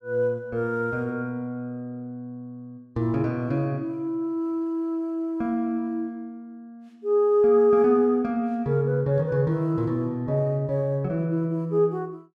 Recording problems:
none

